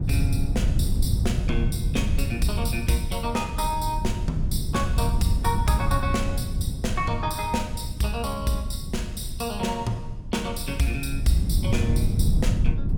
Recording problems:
wind noise; below 120 Hz, SNR 0 dB

